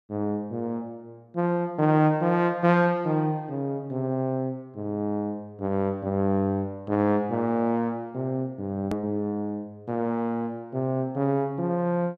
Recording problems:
click at an edit; at 9 s

